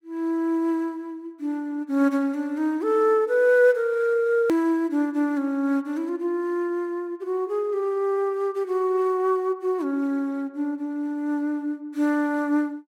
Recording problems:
edit click; at 4.5 s

